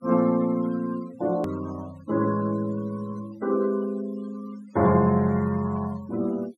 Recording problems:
denoising artefacts; signal-to-artefact ratio 21 dB
edit click; at 1.5 s

